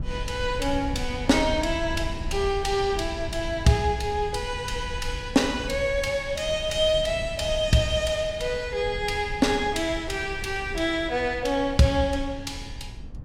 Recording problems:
low-frequency rumble; below 98 Hz, SNR 11 dB

